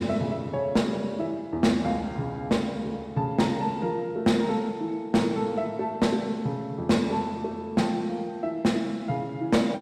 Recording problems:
distortion; hard clipping, signal-to-distortion ratio 12 dB

